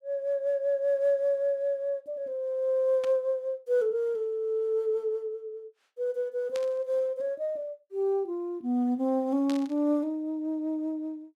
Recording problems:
static burst; at 3 s, at 6.5 s and at 9.5 s; peak -8 dB vs average level

